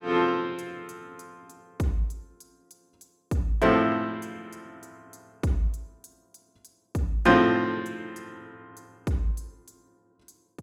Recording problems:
none

